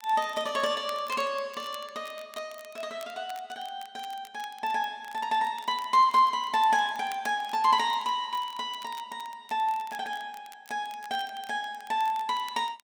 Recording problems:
crackling; vinyl, SNR 22 dB

